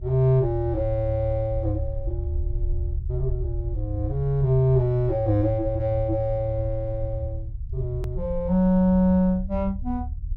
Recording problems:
low-frequency rumble; below 76 Hz, SNR 8 dB
click at an edit; at 8 s

